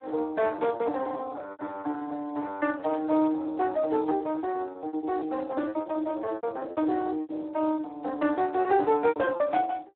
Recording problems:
phone line; 260 Hz to 2.6 kHz, Speex
lost packets; 15% of the sound replaced, filled with repeated pitch periods
static burst; at 3 s and at 5.5 s; peak -17 dB vs average level

